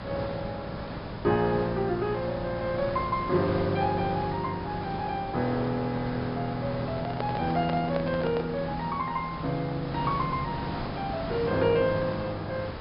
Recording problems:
treble missing; nothing above 5.5 kHz
background hiss; slope -6 dB per octave, SNR 8 dB
handling noise; from 7 to 8.5 s; peak -1 dB vs average level

